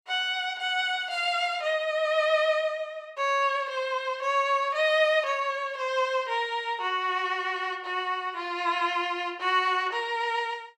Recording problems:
none

